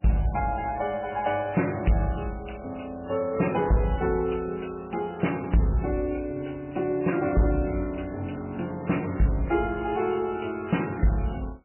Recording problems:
lossy codec; MP3, log-spectral distance 6 dB, nothing above 3 kHz
distortion; hard clipping, signal-to-distortion ratio 12 dB

